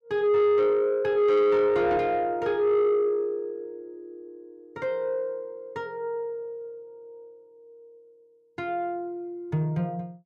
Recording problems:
distorted audio; soft clipping, signal-to-distortion ratio 10 dB

